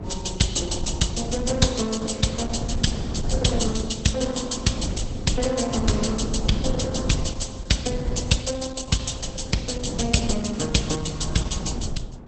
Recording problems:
lossy compression; Opus, log-spectral distance 7 dB, nothing above 8.2 kHz
rumble; below 190 Hz, SNR 6 dB

